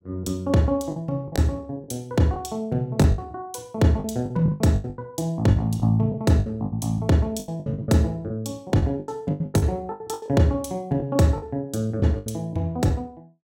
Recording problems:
packet loss; 13% of the sound replaced, filled with the last packet

